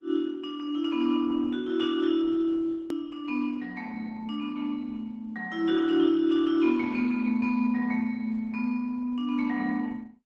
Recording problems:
lossy codec; Opus, then Opus, log-spectral distance 2 dB, nothing above 13.1 kHz
click at an edit; at 3 s

